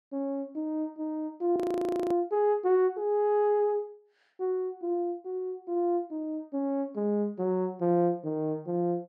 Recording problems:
audio freezing; at 1.5 s for 0.5 s

